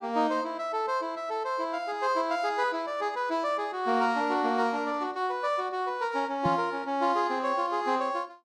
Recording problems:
knock on the microphone; at 6.5 s; peak +1 dB vs average level

